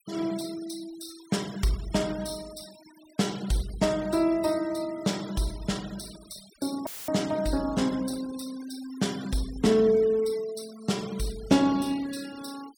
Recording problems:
noise reduction artefacts; signal-to-artefact ratio 18 dB
dropout; at 7 s; filled with static

